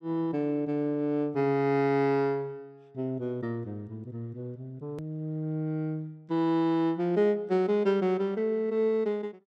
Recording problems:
edit click; at 5 s

